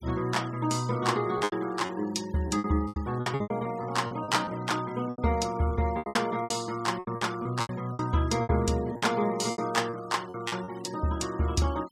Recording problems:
noise reduction artefacts; signal-to-artefact ratio 20 dB
packet loss; 13% of the sound replaced, filled with repeated pitch periods

